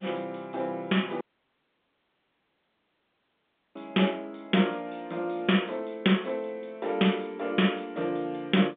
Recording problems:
phone line; 150 Hz to 3.6 kHz, G.711
dropout; at 1 s for 2.5 s

